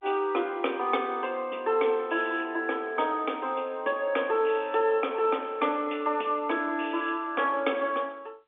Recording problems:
telephone audio; 240 Hz to 3.6 kHz, G.711

